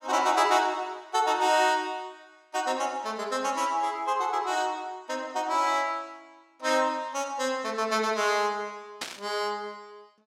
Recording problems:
burst of static; at 9 s; peak -1 dB vs average level

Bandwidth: 16 kHz